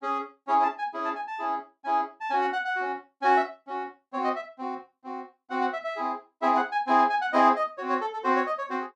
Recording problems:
none

